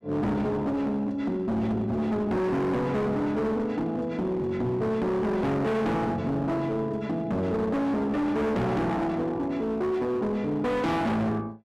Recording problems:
distorted audio; hard clipping, signal-to-distortion ratio 6 dB

